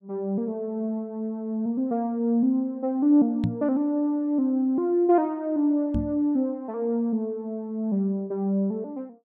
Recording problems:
microphone thump; at 3.5 s and at 6 s; peak +3 dB vs average level

